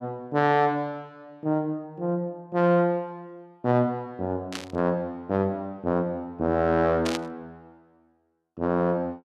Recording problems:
burst of static; at 4.5 s and at 7 s; peak -2 dB vs average level

